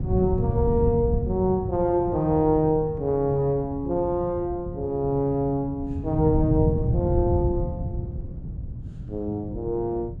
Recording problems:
wind noise; below 150 Hz, SNR 5 dB

